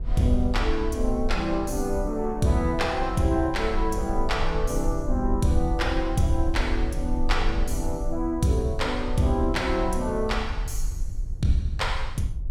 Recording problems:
low-frequency rumble; below 52 Hz, strongest tone 20 Hz, SNR 6 dB

